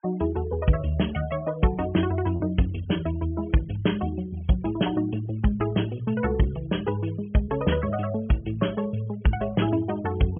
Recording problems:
low-pass filter; nothing above 3.3 kHz
noise reduction artefacts; signal-to-artefact ratio 22 dB
packet loss; 0.8% of the sound replaced, filled with repeated pitch periods

